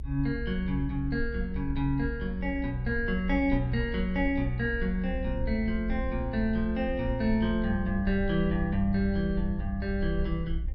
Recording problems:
rumble; below 62 Hz, SNR 7 dB

